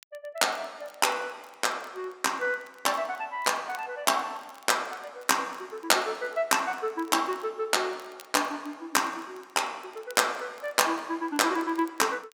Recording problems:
crackle; vinyl, SNR 28 dB

